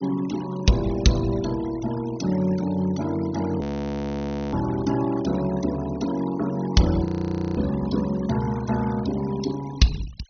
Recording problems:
treble cut off; nothing above 6.4 kHz
noise reduction artefacts; signal-to-artefact ratio 16 dB
frozen audio; at 3.5 s for 1 s and at 7 s for 0.5 s

